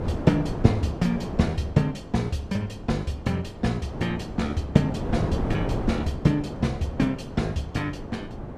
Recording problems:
wind on the microphone; below 460 Hz, SNR 7 dB

